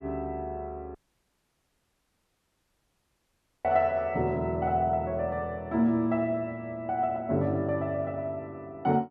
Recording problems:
audio cutting out; at 1 s for 2.5 s

